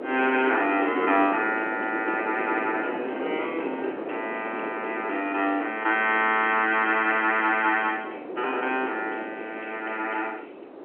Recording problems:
telephone audio; 300 Hz to 3.2 kHz, G.711
wind on the microphone; below 610 Hz, SNR 10 dB

